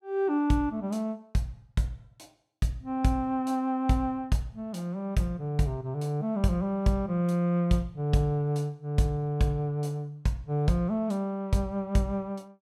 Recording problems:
none

